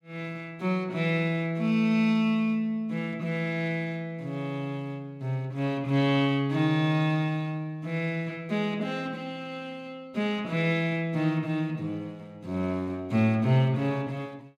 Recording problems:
none

